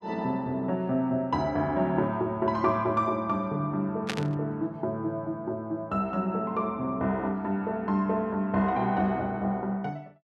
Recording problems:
static burst; at 4 s; peak +1 dB vs average level

